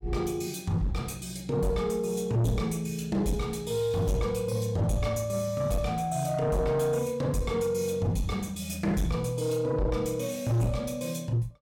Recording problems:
distortion; soft clipping, signal-to-distortion ratio 8 dB

